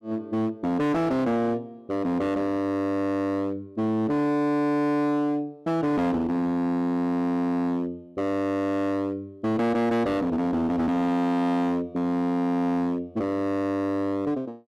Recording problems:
distortion; hard clipping, signal-to-distortion ratio 7 dB

